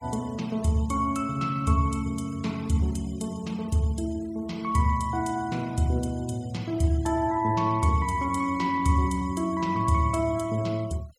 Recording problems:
noise reduction artefacts; signal-to-artefact ratio 23 dB

